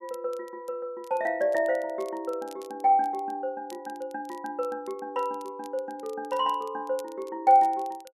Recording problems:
crackle; vinyl, SNR 27 dB

